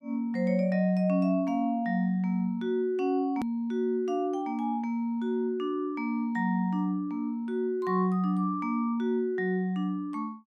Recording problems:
click at an edit; at 3.5 s

